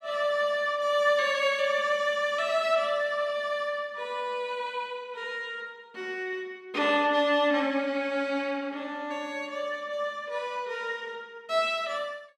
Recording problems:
none

